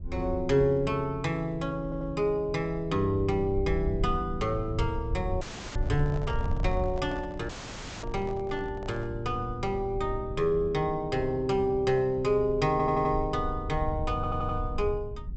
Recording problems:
treble missing; nothing above 8 kHz
rumble; below 90 Hz, SNR 9 dB
audio stuttering; at 2 s, at 13 s and at 14 s
dropout; at 5.5 s and at 7.5 s for 0.5 s
handling noise; from 6 to 9 s; peak -9 dB vs average level

